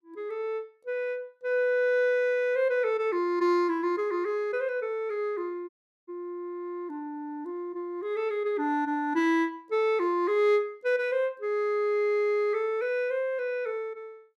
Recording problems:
audio cutting out; at 5.5 s

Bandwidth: 14.5 kHz